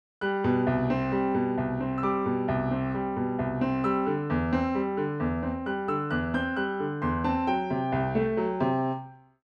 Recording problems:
none

